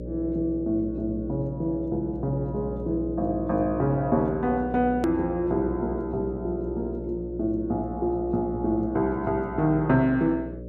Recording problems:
electrical hum; 60 Hz, harmonics up to 600 Hz, SNR 10 dB
edit click; at 5 s

